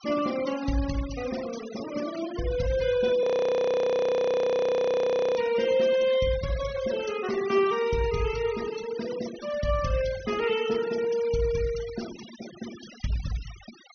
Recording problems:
low-pass filter; nothing above 6.3 kHz
denoising artefacts; signal-to-artefact ratio 16 dB
frozen audio; at 3 s for 2 s

